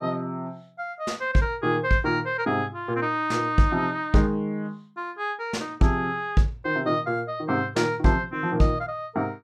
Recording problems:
none

